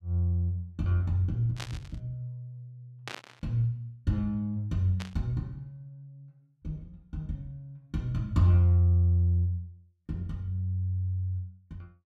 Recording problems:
burst of static; at 1.5 s, at 3 s and at 5 s; peak -5 dB vs average level

